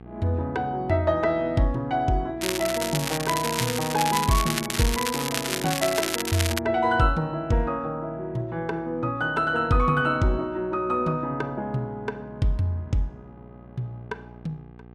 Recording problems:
hum; 60 Hz, harmonics up to 1.7 kHz, SNR 21 dB
crackling; from 2.5 to 6.5 s; loose cable, SNR 3 dB

